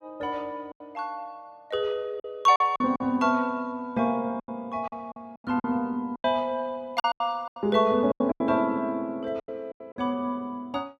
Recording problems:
lost packets; 11% of the sound replaced, filled with silence

